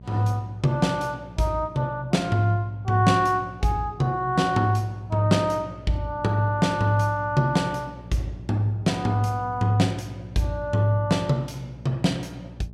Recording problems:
hum; 60 Hz, harmonics up to 660 Hz, SNR 18 dB

